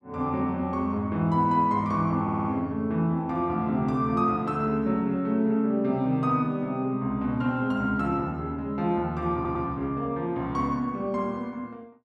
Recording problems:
stutter; at 2 s and at 9.5 s

